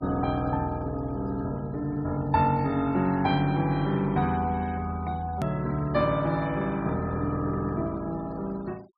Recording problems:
treble cut off; nothing above 5.5 kHz
noise reduction artefacts; signal-to-artefact ratio 25 dB
click at an edit; at 5.5 s

